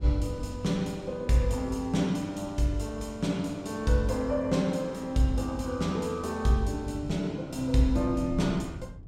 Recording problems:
wind on the microphone; below 150 Hz, SNR 17 dB

